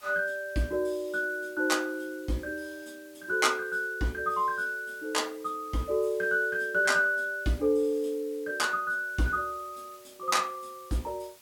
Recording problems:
background hiss; slope 0 dB per octave, SNR 24 dB

